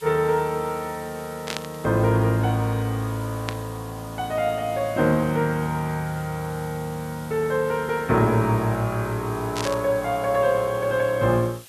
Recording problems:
hiss; slope +1 dB per octave, SNR 20 dB
burst of static; at 1.5 s, at 3.5 s and at 9.5 s; peak -1 dB vs average level

